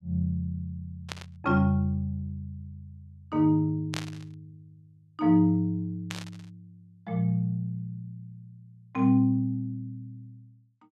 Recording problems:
burst of static; at 1 s, at 4 s and at 6 s; peak -3 dB vs average level

